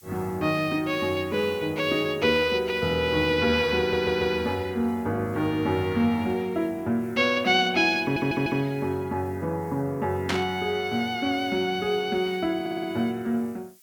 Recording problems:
hiss; slope +4 dB per octave, SNR 28 dB
stutter; at 4 s, at 8 s and at 13 s
static burst; at 10 s; peak +2 dB vs average level

